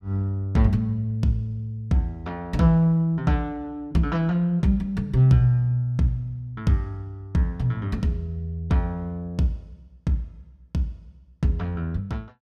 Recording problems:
none

